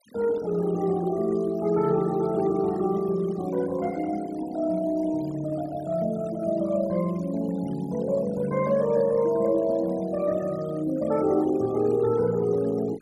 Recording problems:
denoising artefacts; signal-to-artefact ratio 21 dB

